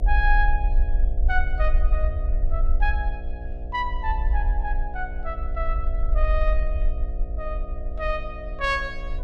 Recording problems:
electrical hum; 60 Hz, harmonics up to 720 Hz, SNR 11 dB
low-frequency rumble; below 50 Hz, SNR -3 dB

